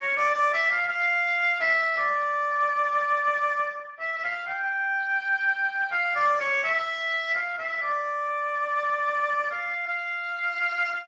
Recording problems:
lossy codec; Speex, log-spectral distance 3 dB

